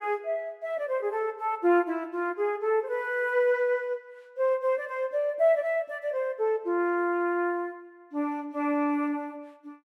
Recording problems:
none

